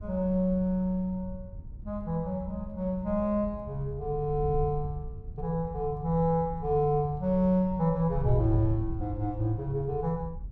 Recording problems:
wind noise; below 94 Hz, SNR 11 dB

